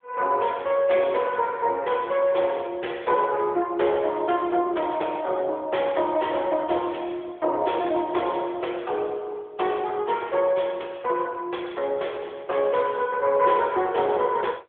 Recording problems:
telephone audio; 300 Hz to 3.6 kHz, AMR-NB

